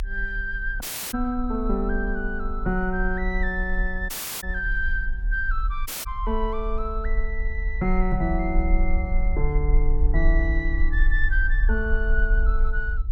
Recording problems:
rumble; below 44 Hz, SNR -1 dB
dropout; at 1 s, at 4 s and at 6 s

